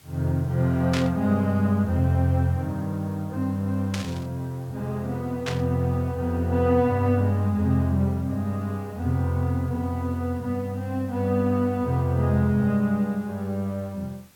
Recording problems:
background hiss; slope -2 dB per octave, SNR 29 dB
burst of static; at 1 s, at 4 s and at 5.5 s; peak -2 dB vs average level

